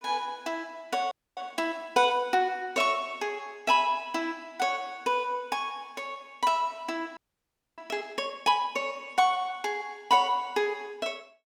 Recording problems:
frozen audio; at 1 s and at 7 s for 0.5 s

